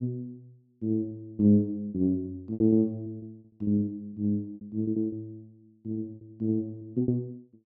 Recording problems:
lost packets; 12% of the sound replaced, filled with repeated pitch periods

